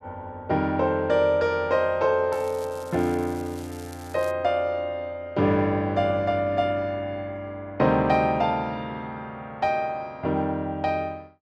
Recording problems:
crackling; from 2.5 to 4.5 s; loose cable, SNR 22 dB

